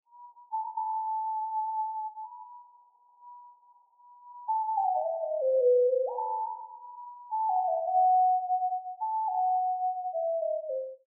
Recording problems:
none

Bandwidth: 950 Hz